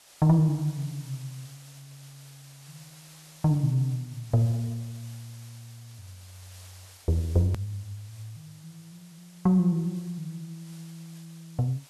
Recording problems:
hiss; slope 0 dB per octave, SNR 23 dB
edit click; at 7.5 s

